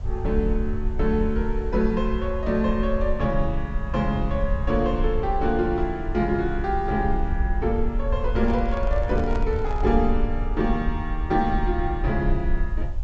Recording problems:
treble missing; nothing above 8 kHz
background hiss; SNR 28 dB
low-frequency rumble; below 58 Hz, SNR 4 dB
handling noise; from 8.5 to 10 s; peak -7 dB vs average level

